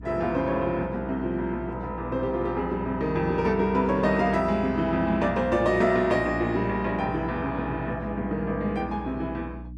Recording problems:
hum; 60 Hz, harmonics up to 300 Hz, SNR 14 dB

